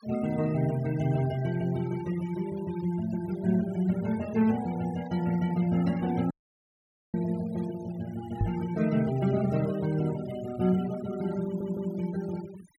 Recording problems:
denoising artefacts; signal-to-artefact ratio 18 dB
dropout; at 6.5 s for 1 s
microphone thump; at 8.5 s; peak +5 dB vs average level
stutter; at 11 s

